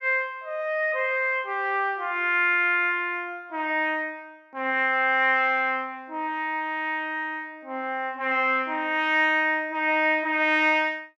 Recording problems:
none

